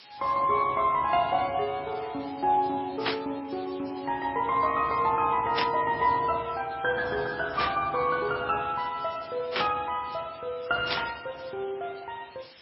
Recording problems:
codec artefacts; MP3, then AAC, log-spectral distance 14 dB
background hiss; SNR 21 dB
static burst; 5 times, first at 3 s; peak +4 dB vs average level

